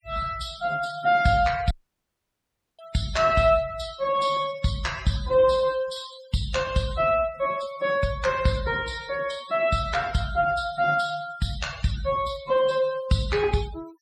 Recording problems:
noise reduction artefacts; signal-to-artefact ratio 17 dB
audio cutting out; at 1.5 s for 1 s

